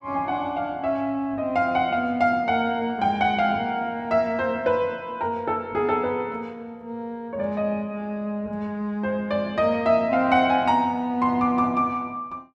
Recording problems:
none

